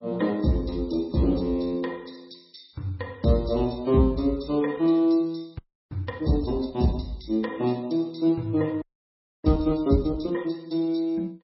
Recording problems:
lossy codec; MP3, log-spectral distance 3 dB, nothing above 5.5 kHz
frozen audio; at 5.5 s and at 9 s for 0.5 s

